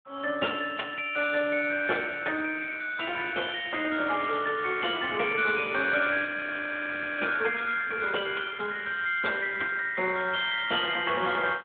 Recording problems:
telephone audio; 280 Hz to 3.6 kHz, Speex
frozen audio; at 6.5 s for 1 s

